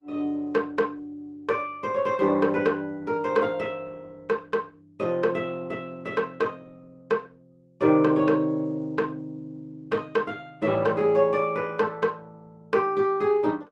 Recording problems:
lossy codec; Opus, log-spectral distance 2 dB

